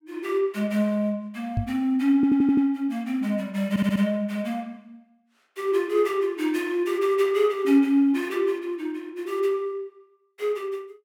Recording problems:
microphone bump; at 1.5 s; peak +1 dB vs average level
stutter; at 2 s and at 3.5 s

